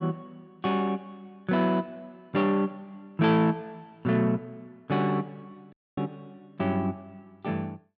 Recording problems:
audio cutting out; at 5.5 s

